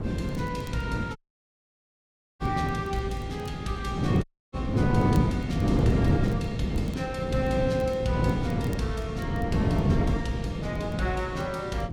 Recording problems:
wind on the microphone; below 290 Hz, SNR -3 dB
crackle; vinyl, SNR 25 dB
audio cutting out; at 1 s for 1 s and at 4 s

